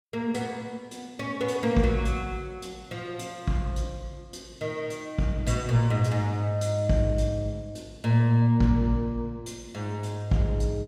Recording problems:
none

